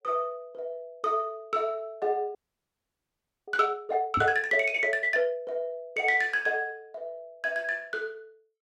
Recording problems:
frozen audio; at 2.5 s for 1 s
microphone thump; at 4 s; peak -2 dB vs average level

